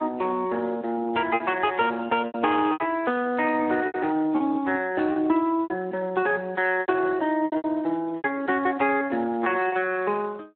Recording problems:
phone line; 260 Hz to 3.9 kHz, Speex
packet loss; 9% of the sound replaced, filled with repeated pitch periods

